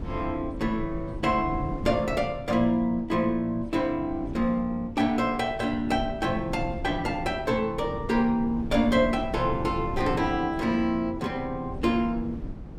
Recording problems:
rumble; below 220 Hz, SNR 12 dB

